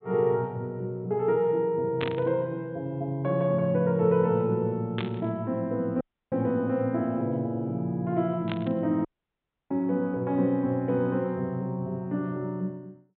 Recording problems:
treble missing; nothing above 4 kHz
burst of static; at 2 s, at 5 s and at 8.5 s; peak -2 dB vs average level
audio cutting out; at 6 s and at 9 s for 0.5 s

